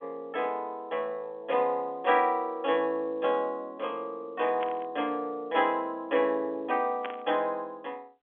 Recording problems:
telephone audio; 220 Hz to 3.4 kHz, G.711
static burst; at 4.5 s and at 7 s; peak -4 dB vs average level

